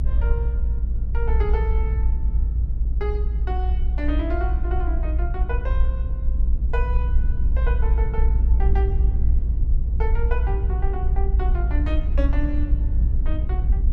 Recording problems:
low-frequency rumble; below 58 Hz, SNR -10 dB

